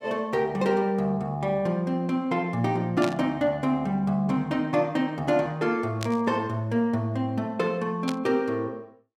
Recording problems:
burst of static; at 3 s, at 6 s and at 8 s; peak -3 dB vs average level

